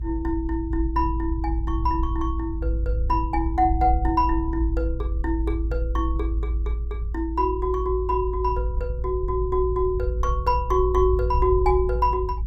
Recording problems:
low-frequency rumble; below 58 Hz, strongest tone 54 Hz, SNR 2 dB

